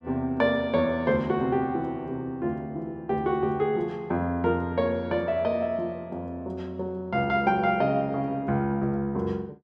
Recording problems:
none

